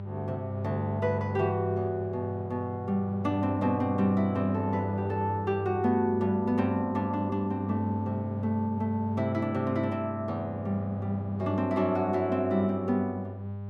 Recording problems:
electrical hum; 50 Hz, harmonics up to 800 Hz, SNR 6 dB

